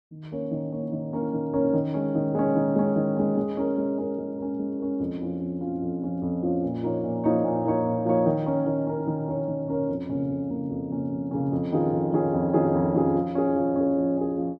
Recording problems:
none

